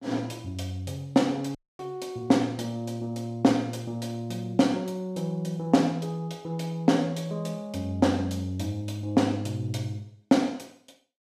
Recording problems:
dropout; at 1.5 s

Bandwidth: 15 kHz